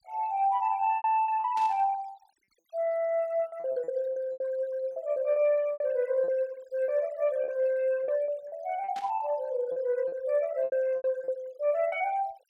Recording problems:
noise reduction artefacts; signal-to-artefact ratio 24 dB
packet loss; 11% of the sound replaced, filled with repeated pitch periods
static burst; at 1.5 s and at 9 s; peak -12 dB vs average level

